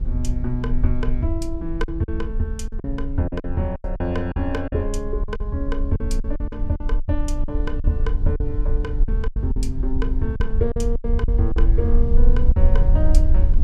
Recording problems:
low-frequency rumble; below 52 Hz, strongest tone 22 Hz, SNR -3 dB
packet loss; 10% of the sound replaced, filled with silence

